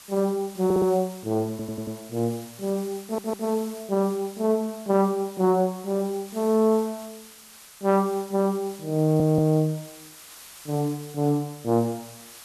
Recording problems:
background hiss; slope +1 dB per octave, SNR 19 dB
audio stuttering; 4 times, first at 0.5 s

